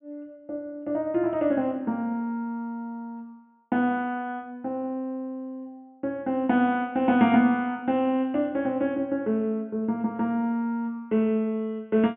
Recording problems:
treble missing; nothing above 3.5 kHz

